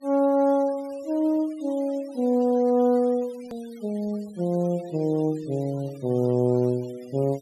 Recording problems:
noise reduction artefacts; signal-to-artefact ratio 26 dB
hard cut with a click; at 3.5 s

